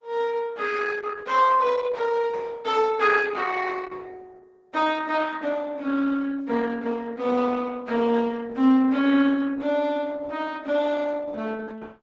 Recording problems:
low-pass filter; nothing above 8 kHz
codec artefacts; Opus, log-spectral distance 4 dB

